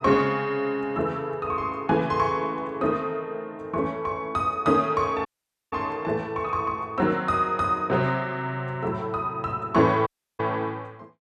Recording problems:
dropout; at 5.5 s and at 10 s

